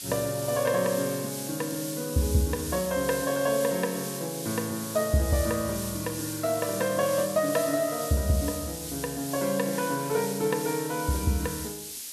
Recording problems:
hiss; SNR 7 dB

